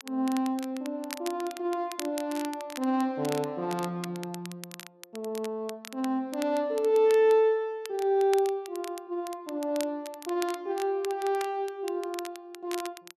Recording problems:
crackle; vinyl, SNR 15 dB

